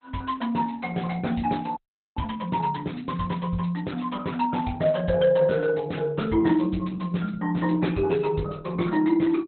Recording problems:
lossy codec; Opus, log-spectral distance 4 dB, nothing above 4 kHz
audio freezing; at 2 s

